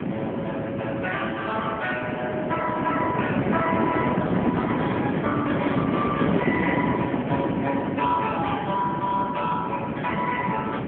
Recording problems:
phone line; 190 Hz to 3.3 kHz, AMR-NB
wind on the microphone; below 490 Hz, SNR 0 dB

